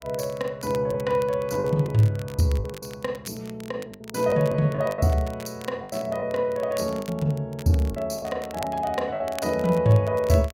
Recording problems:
crackling; vinyl, SNR 20 dB
packet loss; 8% of the sound replaced, filled with the last packet

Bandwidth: 16 kHz